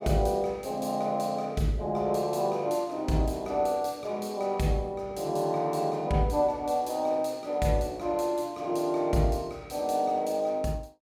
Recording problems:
none

